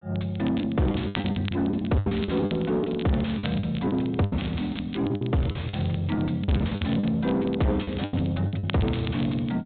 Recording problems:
treble missing; nothing above 4 kHz
distorted audio; soft clipping, signal-to-distortion ratio 5 dB
crackling; vinyl, SNR 16 dB
lost packets; 13% of the sound replaced, filled with the last packet

